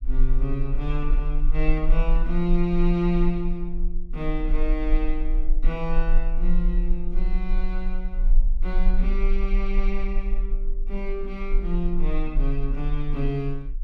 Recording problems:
low-frequency rumble; below 34 Hz, strongest tone 20 Hz, SNR -2 dB

